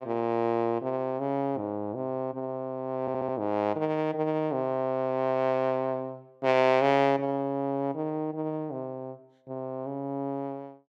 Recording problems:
audio stuttering; at 3 s

